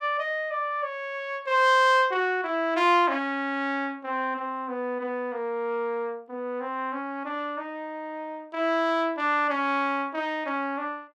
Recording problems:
none

